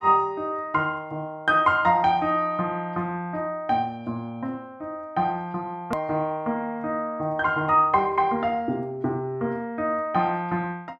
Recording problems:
edit click; at 6 s

